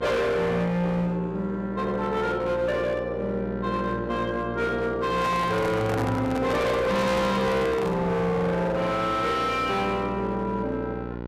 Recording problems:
distorted audio; hard clipping, signal-to-distortion ratio 7 dB
hum; 60 Hz, harmonics up to 1.9 kHz, SNR 11 dB
handling noise; from 5 to 8 s; peak -1 dB vs average level

